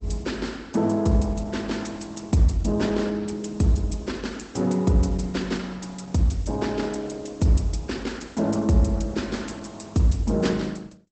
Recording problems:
lossy compression; Opus, log-spectral distance 4 dB, nothing above 8.2 kHz

